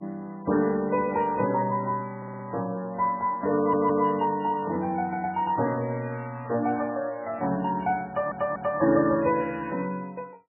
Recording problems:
codec artefacts; MP3, log-spectral distance 2 dB, nothing above 2.8 kHz
audio stuttering; at 2 s, at 3.5 s and at 8 s

